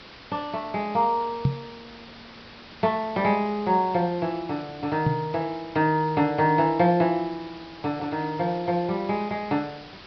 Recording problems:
treble cut off; nothing above 5.5 kHz
background hiss; SNR 19 dB
microphone bump; at 1.5 s and at 5 s; peak +6 dB vs average level

